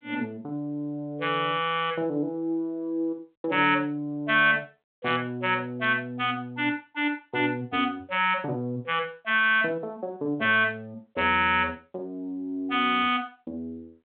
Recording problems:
phone line; 190 Hz to 3.6 kHz, G.726

